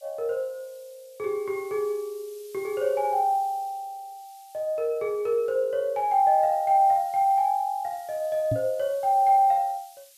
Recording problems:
background hiss; slope +7 dB per octave, SNR 26 dB
microphone bump; at 8.5 s; peak -1 dB vs average level

